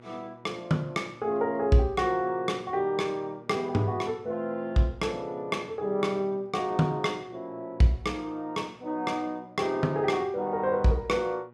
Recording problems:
mains hum; 60 Hz, harmonics up to 1.9 kHz, SNR 26 dB

